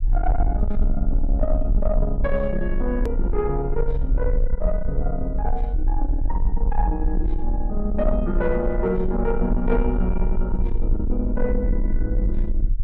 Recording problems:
distortion; soft clipping, signal-to-distortion ratio 11 dB
rumble; below 46 Hz, SNR 0 dB
hard cut with a click; at 3 s

